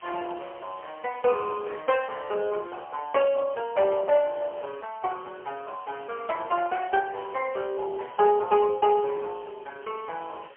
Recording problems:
phone line; 370 Hz to 2.9 kHz, AMR-NB, then MP3
hiss; SNR 27 dB

